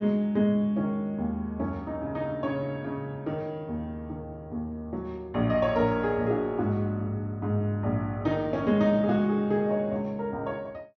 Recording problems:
low-pass filter; nothing above 6.5 kHz

